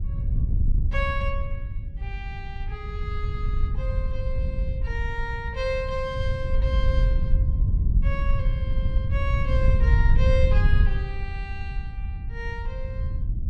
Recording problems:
wind on the microphone; below 82 Hz, SNR -7 dB

